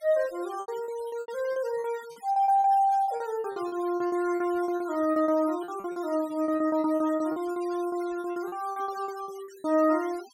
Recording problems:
denoising artefacts; signal-to-artefact ratio 21 dB
lost packets; 18% of the sound replaced, filled with repeated pitch periods

